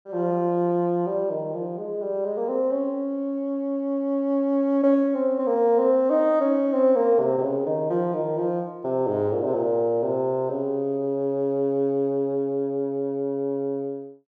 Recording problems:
none

